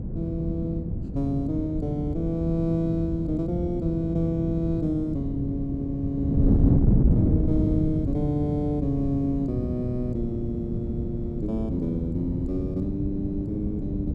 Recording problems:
wind noise; below 220 Hz, SNR 0 dB

